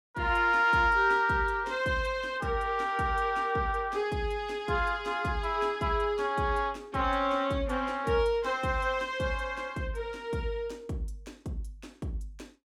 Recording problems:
none

